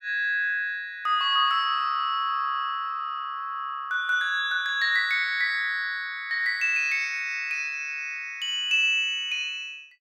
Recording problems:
none

